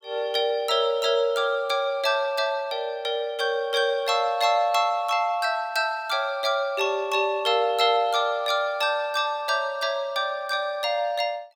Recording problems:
none

